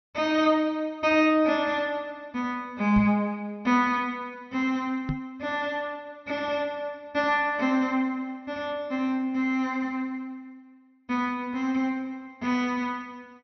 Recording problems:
low-pass filter; nothing above 6.1 kHz
microphone bump; at 3 s and at 5 s; peak 0 dB vs average level

